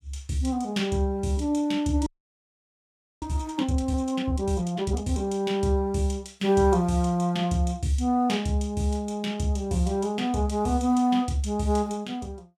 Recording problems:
frozen audio; at 2 s for 1 s

